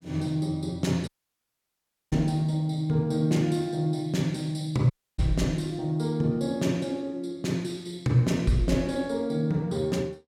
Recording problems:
dropout; at 1 s for 1 s and at 5 s

